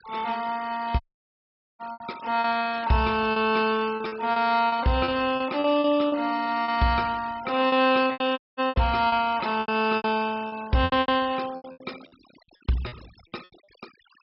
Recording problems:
low-pass filter; nothing above 5.3 kHz
noise reduction artefacts; signal-to-artefact ratio 21 dB
packet loss; 13% of the sound replaced, filled with repeated pitch periods
audio cutting out; at 1 s for 1 s and at 8.5 s

